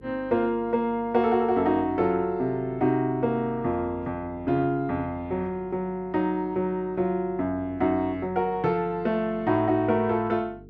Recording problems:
hum; 50 Hz, harmonics up to 450 Hz, SNR 23 dB

